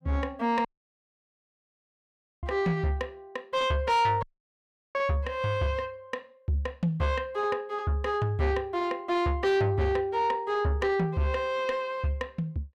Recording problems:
distortion; soft clipping, signal-to-distortion ratio 10 dB
dropout; at 0.5 s for 2 s and at 4 s for 0.5 s

